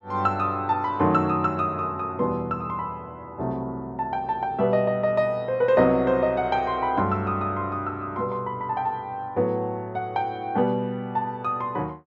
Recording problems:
none

